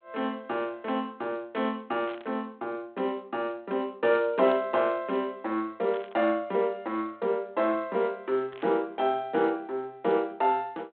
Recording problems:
telephone audio; 240 Hz to 3.6 kHz, G.726
burst of static; 4 times, first at 2 s; peak -10 dB vs average level

